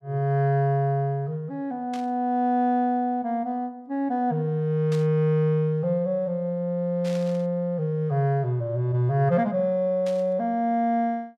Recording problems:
static burst; 4 times, first at 2 s; peak -12 dB vs average level

